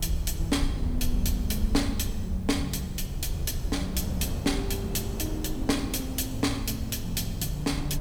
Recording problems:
hiss; slope -4 dB per octave, SNR 25 dB
low-frequency rumble; below 72 Hz, SNR 6 dB
wind on the microphone; below 210 Hz, SNR 6 dB

